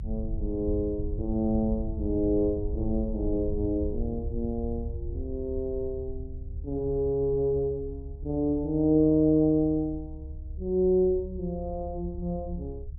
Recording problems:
low-frequency rumble; below 80 Hz, SNR 9 dB

